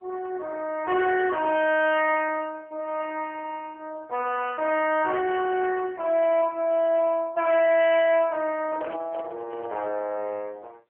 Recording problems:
telephone audio; 320 Hz to 3.4 kHz, AMR-NB
distortion; hard clipping, signal-to-distortion ratio 11 dB
handling noise; from 8.5 to 10 s; peak -9 dB vs average level

